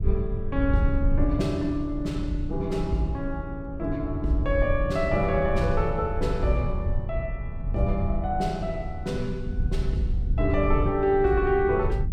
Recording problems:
low-frequency rumble; below 84 Hz, SNR 4 dB

